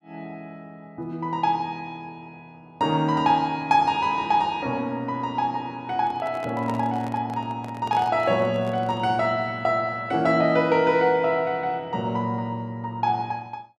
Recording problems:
microphone handling noise; from 6 to 9 s; peak -8 dB vs average level

